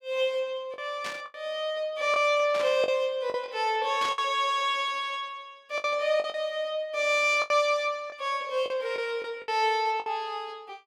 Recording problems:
lost packets; 7% of the sound replaced, filled with the last packet
static burst; at 1 s, at 2.5 s and at 4 s; peak -5 dB vs average level

